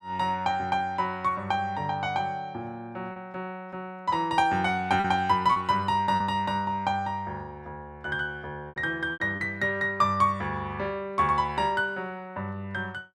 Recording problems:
packet loss; 3% of the sound replaced, filled with repeated pitch periods

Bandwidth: 14 kHz